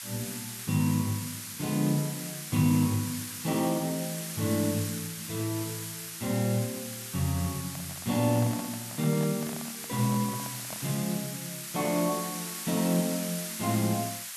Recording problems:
background hiss; SNR 6 dB
microphone handling noise; from 7.5 to 11 s; peak -8 dB vs average level

